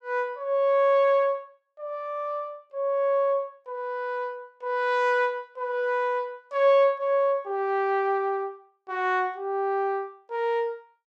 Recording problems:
none

